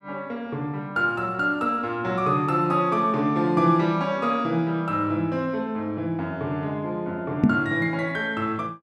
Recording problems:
microphone bump; at 7.5 s; peak +10 dB vs average level

